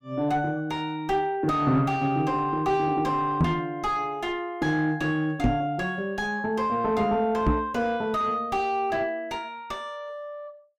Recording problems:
distortion; soft clipping, signal-to-distortion ratio 8 dB
knock on the microphone; at 3.5 s, at 5.5 s and at 7.5 s; peak +8 dB vs average level

